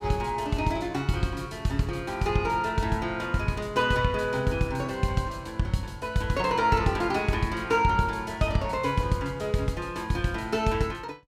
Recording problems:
none

